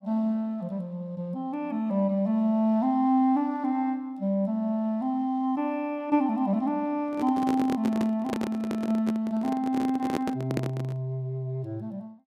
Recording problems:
microphone handling noise; from 7 to 11 s; peak +3 dB vs average level

